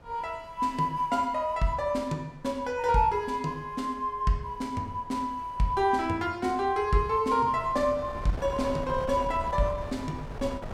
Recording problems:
wind noise; below 590 Hz, SNR 15 dB

